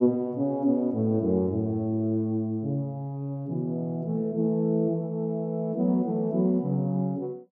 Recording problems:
none

